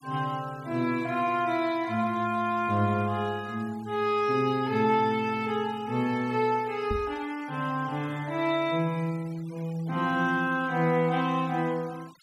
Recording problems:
noise reduction artefacts; signal-to-artefact ratio 23 dB
microphone bump; at 7 s; peak -2 dB vs average level

